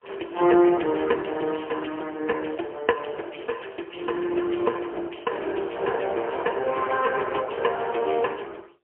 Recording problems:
telephone audio; 300 Hz to 2.6 kHz, AMR-NB, then MP3

